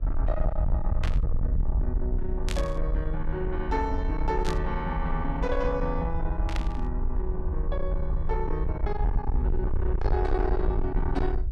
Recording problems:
distortion; soft clipping, signal-to-distortion ratio 7 dB
hum; 50 Hz, harmonics up to 1.3 kHz, SNR 25 dB
rumble; below 62 Hz, SNR -1 dB
burst of static; 4 times, first at 1 s; peak +1 dB vs average level

